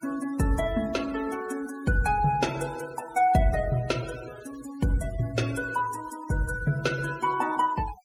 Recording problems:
denoising artefacts; signal-to-artefact ratio 17 dB

